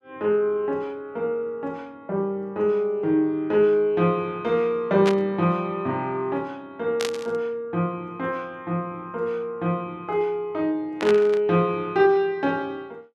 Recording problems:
burst of static; at 5 s, at 7 s and at 11 s; peak -1 dB vs average level

